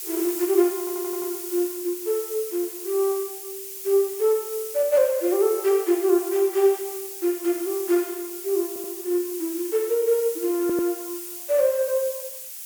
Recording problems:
background hiss; SNR 9 dB
stutter; at 1 s, at 8.5 s and at 11 s

